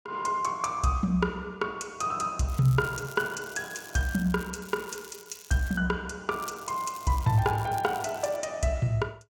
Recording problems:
crackle; from 2.5 to 6 s and from 6.5 to 8.5 s; loose cable, SNR 18 dB

